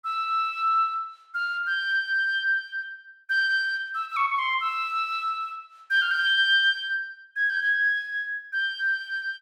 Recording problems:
none

